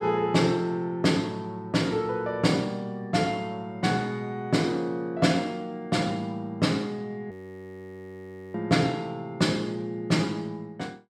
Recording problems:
frozen audio; at 7.5 s for 1 s

